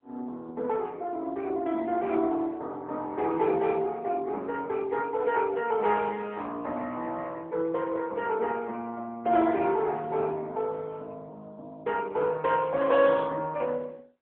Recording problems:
phone line; 240 Hz to 3.4 kHz, AMR-NB

